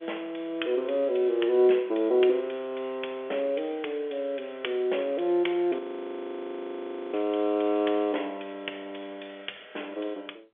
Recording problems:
phone line; 280 Hz to 3.4 kHz, G.711
frozen audio; at 6 s for 1.5 s

